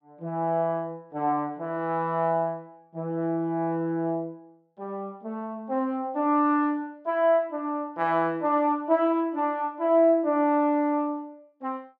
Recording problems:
none

